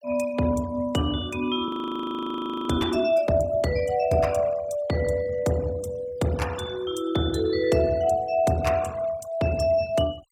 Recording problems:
noise reduction artefacts; signal-to-artefact ratio 21 dB
frozen audio; at 1.5 s for 1 s

